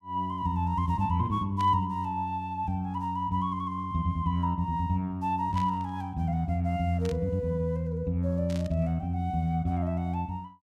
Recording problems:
static burst; 4 times, first at 1.5 s; peak -10 dB vs average level

